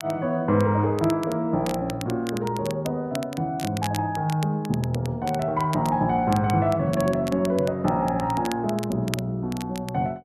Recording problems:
crackling; vinyl, SNR 16 dB

